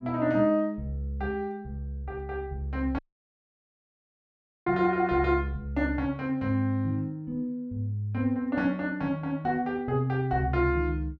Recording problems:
audio cutting out; at 3 s for 1.5 s

